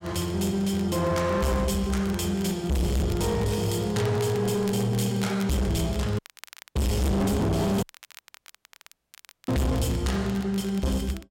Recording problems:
distorted audio; hard clipping, signal-to-distortion ratio 6 dB
crackling; vinyl, SNR 21 dB
audio cutting out; at 6 s for 0.5 s and at 8 s for 1.5 s

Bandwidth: 16 kHz